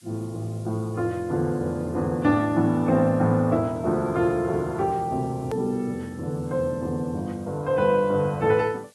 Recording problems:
lossy codec; AAC, log-spectral distance 3 dB, nothing above 13.1 kHz
hiss; slope +4 dB per octave, SNR 29 dB
click at an edit; at 5.5 s

